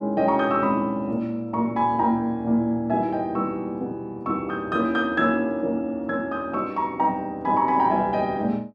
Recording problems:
none

